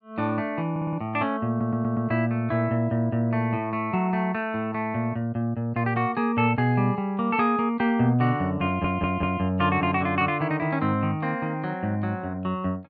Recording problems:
audio stuttering; at 0.5 s, at 1.5 s and at 8.5 s

